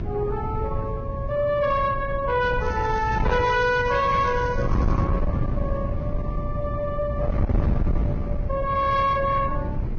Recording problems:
lossy compression; Vorbis, log-spectral distance 2 dB, nothing above 6.3 kHz
distortion; soft clipping, signal-to-distortion ratio 8 dB
hum; 60 Hz, harmonics up to 1.1 kHz, SNR 15 dB
wind noise; below 170 Hz, SNR 4 dB
crackle; from 2.5 to 5 s; loose cable, SNR 24 dB

